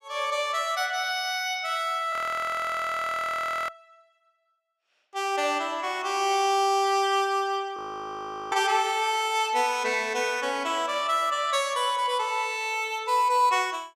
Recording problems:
frozen audio; at 2 s for 1.5 s and at 8 s for 1 s

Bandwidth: 14.5 kHz